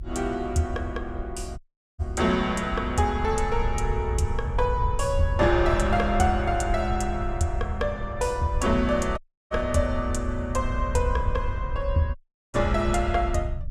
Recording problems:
low-frequency rumble; below 80 Hz, SNR 5 dB
dropout; at 1.5 s, at 9 s and at 12 s

